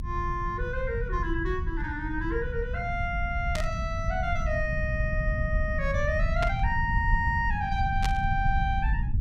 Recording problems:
low-frequency rumble; below 100 Hz, SNR 1 dB
burst of static; at 3.5 s, at 6.5 s and at 8 s; peak +1 dB vs average level

